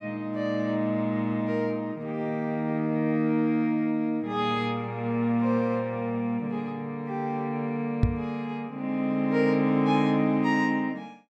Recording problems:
knock on the microphone; at 8 s; peak +8 dB vs average level

